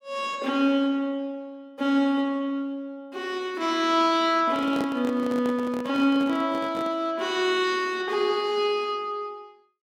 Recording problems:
microphone handling noise; from 4.5 to 7 s; peak -2 dB vs average level

